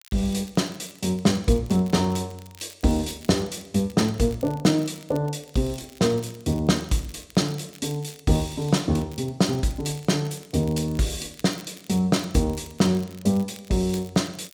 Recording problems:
crackle; vinyl, SNR 23 dB

